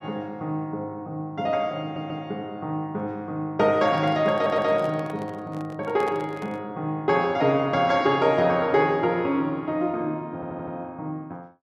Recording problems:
audio stuttering; at 2 s, at 4.5 s and at 10 s
microphone handling noise; from 3.5 to 6.5 s; peak -6 dB vs average level

